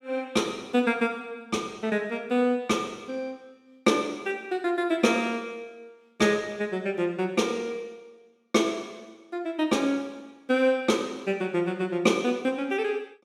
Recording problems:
none

